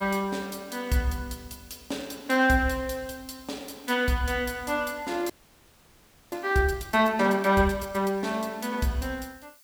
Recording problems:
background hiss; slope +2 dB per octave, SNR 27 dB
frozen audio; at 5.5 s for 1 s

